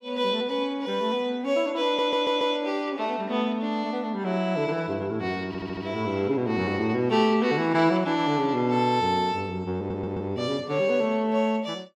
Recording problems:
stutter; at 2 s, at 5.5 s and at 10 s

